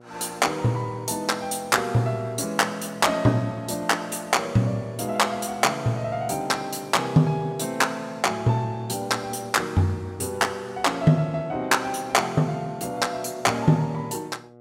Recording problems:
hum; 60 Hz, harmonics up to 1.4 kHz, SNR 25 dB

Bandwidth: 16.5 kHz